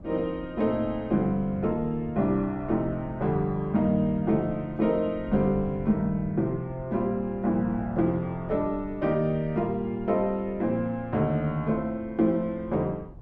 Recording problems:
wind noise; below 180 Hz, SNR 17 dB

